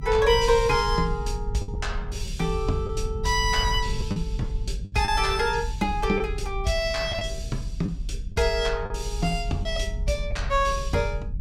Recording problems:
low-frequency rumble; below 68 Hz, SNR 6 dB
packet loss; 3% of the sound replaced, filled with the last packet

